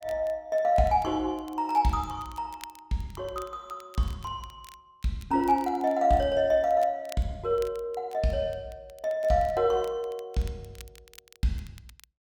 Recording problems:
crackle; vinyl, SNR 25 dB

